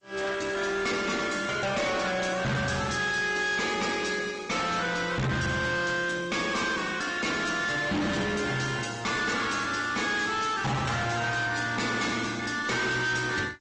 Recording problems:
lossy codec; G.722, then Opus, log-spectral distance 6 dB, nothing above 8 kHz
distorted audio; hard clipping, uneven, signal-to-distortion ratio 5 dB

